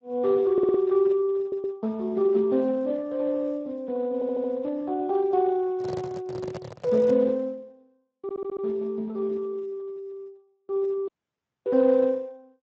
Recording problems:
lossy codec; Speex, log-spectral distance 2 dB
stutter; 4 times, first at 0.5 s
handling noise; from 6 to 7 s; peak -7 dB vs average level
audio cutting out; at 11 s for 0.5 s

